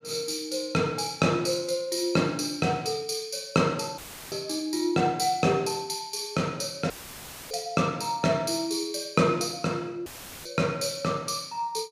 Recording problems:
dropout; at 4 s, at 7 s for 0.5 s and at 10 s; filled with static

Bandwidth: 15 kHz